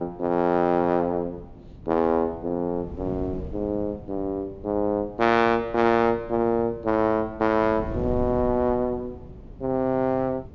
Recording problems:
low-pass filter; nothing above 7.2 kHz
wind noise; below 210 Hz, SNR 16 dB

